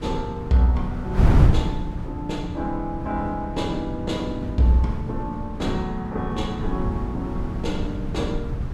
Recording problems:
wind on the microphone; below 140 Hz, SNR 1 dB

